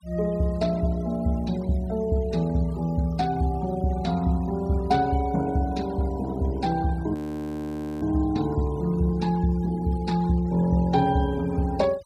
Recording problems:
denoising artefacts; signal-to-artefact ratio 23 dB
audio freezing; at 7 s for 1 s

